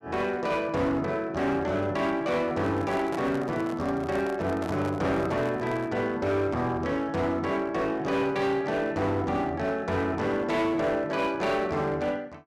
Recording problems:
distorted audio; hard clipping, uneven, signal-to-distortion ratio 11 dB
handling noise; from 2.5 to 6 s; peak -4 dB vs average level

